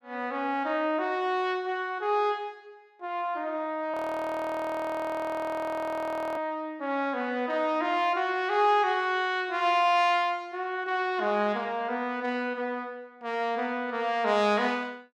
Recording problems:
frozen audio; at 4 s for 2.5 s

